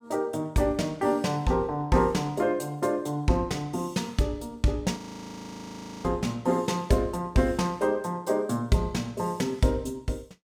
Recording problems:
frozen audio; at 5 s for 1 s

